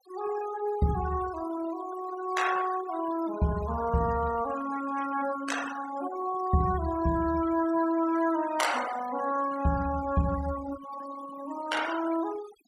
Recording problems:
noise reduction artefacts; signal-to-artefact ratio 13 dB

